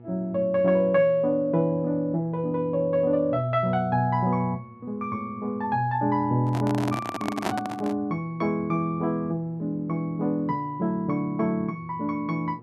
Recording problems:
electrical hum; 60 Hz, harmonics up to 960 Hz, SNR 23 dB
handling noise; from 6.5 to 8 s; peak +2 dB vs average level

